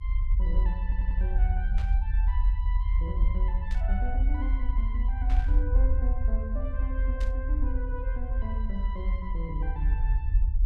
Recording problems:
low-frequency rumble; below 56 Hz, strongest tone 40 Hz, SNR -12 dB
stutter; at 1 s
burst of static; 4 times, first at 2 s; peak -2 dB vs average level

